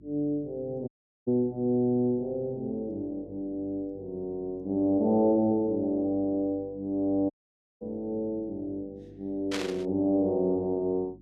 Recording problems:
hum; 50 Hz, harmonics up to 350 Hz, SNR 24 dB
audio cutting out; at 1 s and at 7.5 s for 0.5 s
static burst; at 8 s and at 9.5 s; peak -1 dB vs average level

